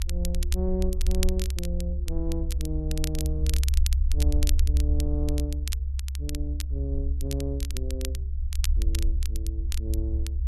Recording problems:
low-frequency rumble; below 68 Hz, SNR -7 dB
crackle; vinyl, SNR 4 dB

